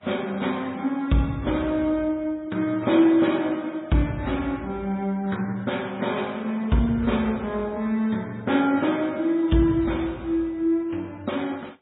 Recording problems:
codec artefacts; AAC, then MP3, log-spectral distance 3 dB, nothing above 3.8 kHz

